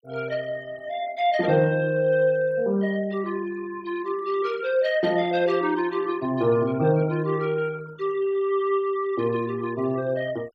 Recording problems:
noise reduction artefacts; signal-to-artefact ratio 23 dB

